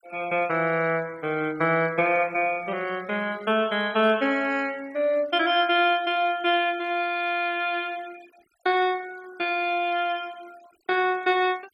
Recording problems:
denoising artefacts; signal-to-artefact ratio 25 dB

